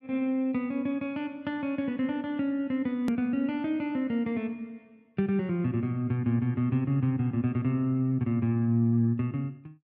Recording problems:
hard cut with a click; at 3 s

